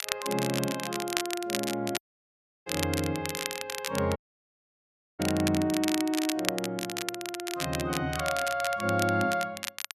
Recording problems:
crackle; vinyl, SNR 4 dB
audio cutting out; at 2 s for 0.5 s and at 4 s for 1 s

